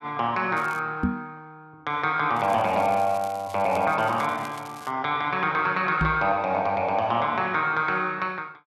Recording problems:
crackle; at 0.5 s and from 2.5 to 5 s; loose cable, SNR 23 dB
microphone thump; at 1 s and at 6 s; peak +4 dB vs average level

